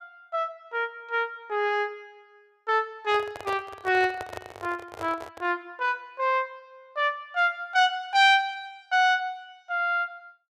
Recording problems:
microphone handling noise; from 3 to 5.5 s; peak -5 dB vs average level

